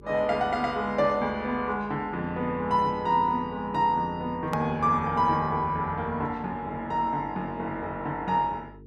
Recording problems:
mains hum; 50 Hz, harmonics up to 450 Hz, SNR 22 dB
hard cut with a click; at 4.5 s

